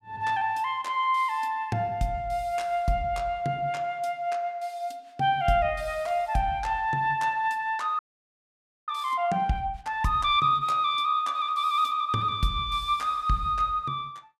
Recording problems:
audio freezing; at 8 s for 1 s

